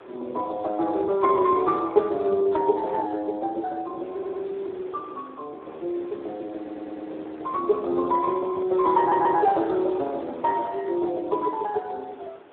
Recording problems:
phone line; 280 Hz to 2.1 kHz, Speex
wind on the microphone; below 1.1 kHz, SNR 22 dB
audio stuttering; at 4 s, at 6.5 s and at 9 s

